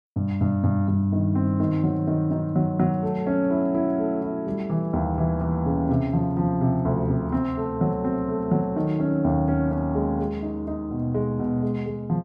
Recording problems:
none

